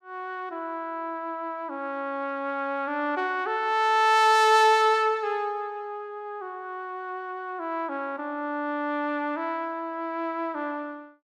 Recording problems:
none

